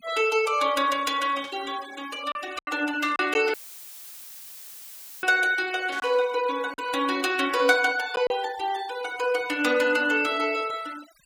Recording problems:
denoising artefacts; signal-to-artefact ratio 19 dB
packet loss; 4% of the sound replaced, filled with silence
burst of static; 4 times, first at 1.5 s; peak -13 dB vs average level
audio cutting out; at 3.5 s for 1.5 s; filled with static

